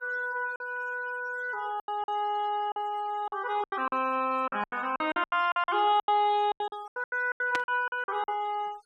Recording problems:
denoising artefacts; signal-to-artefact ratio 21 dB
packet loss; 15% of the sound replaced, filled with silence
static burst; at 7.5 s; peak 0 dB vs average level

